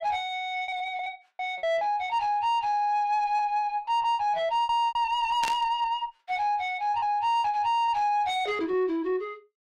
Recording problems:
distortion; soft clipping, signal-to-distortion ratio 10 dB
packet loss; 10% of the sound replaced, filled with repeated pitch periods
static burst; at 5.5 s; peak -2 dB vs average level

